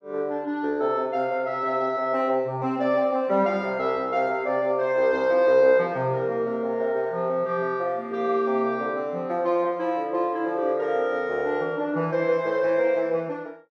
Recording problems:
none

